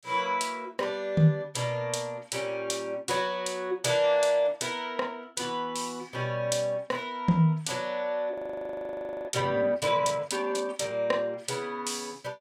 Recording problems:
audio freezing; at 8.5 s for 1 s

